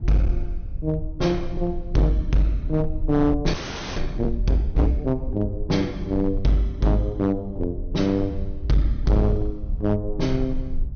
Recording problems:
low-pass filter; nothing above 6.4 kHz
distortion; hard clipping, signal-to-distortion ratio 11 dB
low-frequency rumble; below 60 Hz, SNR 8 dB
audio freezing; at 3.5 s

